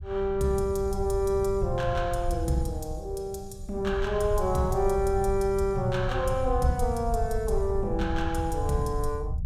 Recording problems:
rumble; below 84 Hz, SNR 6 dB

